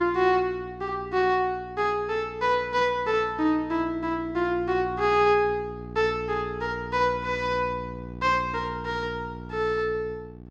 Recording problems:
mains hum; 60 Hz, harmonics up to 840 Hz, SNR 15 dB

